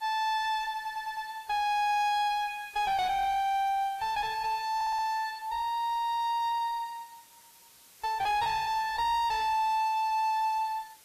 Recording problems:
codec artefacts; AAC, log-spectral distance 3 dB, nothing above 14.7 kHz
distortion; soft clipping, signal-to-distortion ratio 9 dB
hiss; slope +1 dB per octave, SNR 24 dB
audio stuttering; at 1 s and at 5 s

